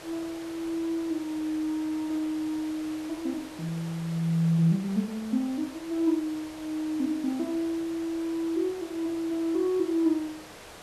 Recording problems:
hiss; slope -4 dB per octave, SNR 16 dB

